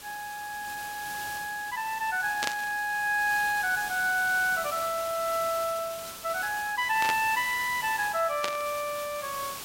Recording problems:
hiss; slope -1 dB per octave, SNR 10 dB
static burst; at 2.5 s, at 7 s and at 8.5 s; peak +2 dB vs average level

